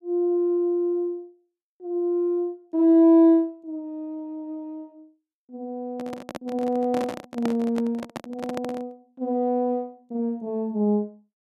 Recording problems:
handling noise; from 6 to 9 s; peak -2 dB vs average level

